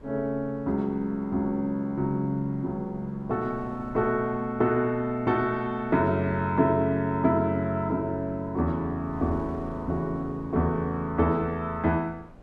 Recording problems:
wind noise; below 410 Hz, SNR 21 dB

